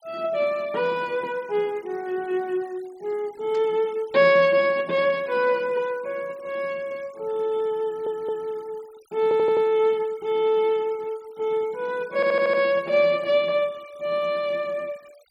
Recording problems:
noise reduction artefacts; signal-to-artefact ratio 27 dB
burst of static; at 3.5 s; peak -18 dB vs average level
audio stuttering; at 8 s, at 9 s and at 12 s

